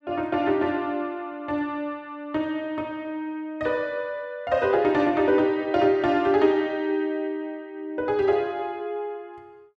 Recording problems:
none

